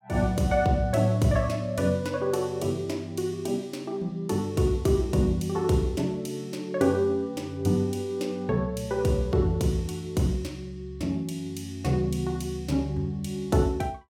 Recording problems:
none

